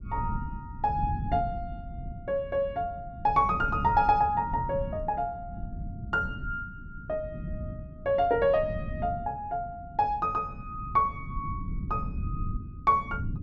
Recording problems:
low-frequency rumble; below 160 Hz, SNR 9 dB

